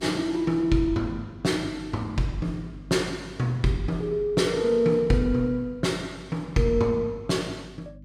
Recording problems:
electrical hum; 50 Hz, harmonics up to 300 Hz, SNR 21 dB

